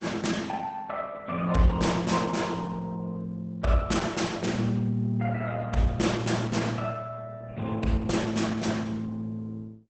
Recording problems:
lossy codec; Opus, log-spectral distance 3 dB, nothing above 8 kHz

